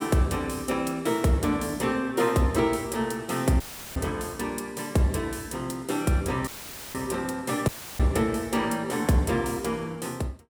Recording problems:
audio cutting out; at 3.5 s, at 6.5 s and at 7.5 s; filled with static

